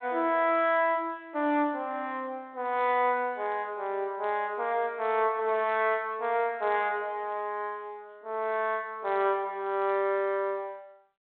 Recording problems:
telephone audio; 260 Hz to 3.7 kHz, G.726

